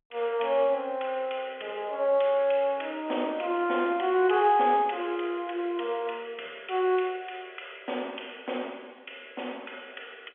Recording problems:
telephone audio; 300 Hz to 3.4 kHz, G.711

